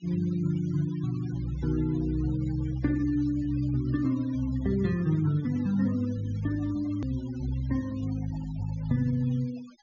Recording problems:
treble missing; nothing above 6.9 kHz
denoising artefacts; signal-to-artefact ratio 22 dB
hard cut with a click; at 7 s

